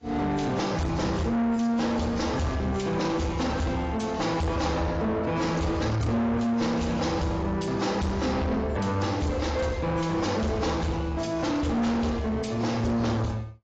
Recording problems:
lossy codec; AAC, log-spectral distance 3 dB, nothing above 7.3 kHz
distorted audio; soft clipping, signal-to-distortion ratio 7 dB

